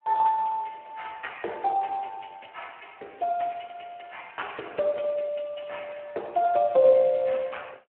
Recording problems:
phone line; 300 Hz to 3.2 kHz, Speex

